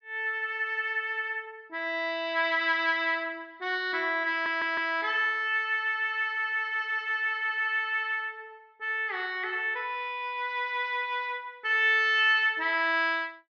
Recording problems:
low-pass filter; nothing above 6.3 kHz
audio stuttering; at 4.5 s

